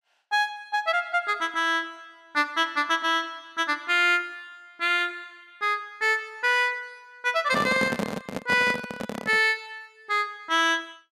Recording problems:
handling noise; from 7.5 to 9.5 s; peak 0 dB vs average level

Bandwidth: 14.5 kHz